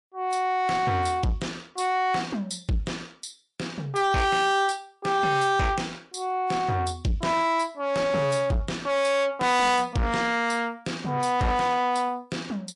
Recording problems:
lossy compression; MP3, log-spectral distance 2 dB
distorted audio; soft clipping, signal-to-distortion ratio 6 dB

